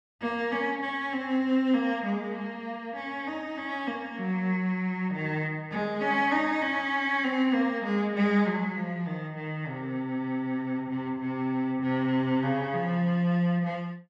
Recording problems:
none

